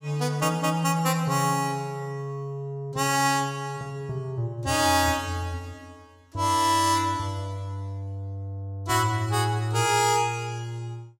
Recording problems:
none

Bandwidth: 16.5 kHz